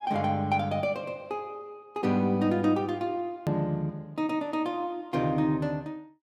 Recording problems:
click at an edit; at 3.5 s

